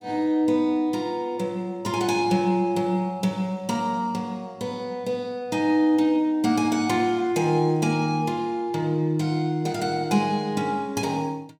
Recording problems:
none

